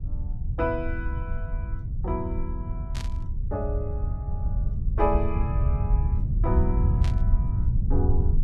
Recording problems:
rumble; below 96 Hz, SNR -5 dB
static burst; at 3 s and at 7 s; peak -3 dB vs average level

